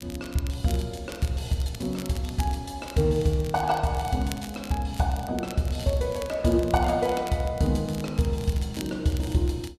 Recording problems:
crackling; vinyl, SNR 18 dB

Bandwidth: 14 kHz